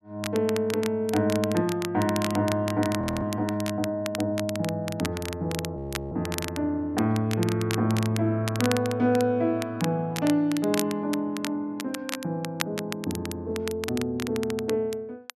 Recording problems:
crackling; vinyl, SNR 10 dB
audio freezing; at 3 s and at 6 s

